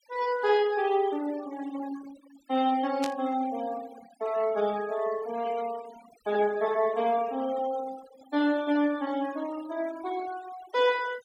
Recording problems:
noise reduction artefacts; signal-to-artefact ratio 19 dB
burst of static; at 3 s; peak -3 dB vs average level

